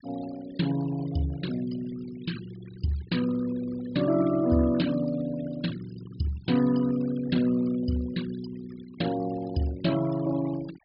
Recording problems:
low-pass filter; nothing above 5.5 kHz
noise reduction artefacts; signal-to-artefact ratio 17 dB

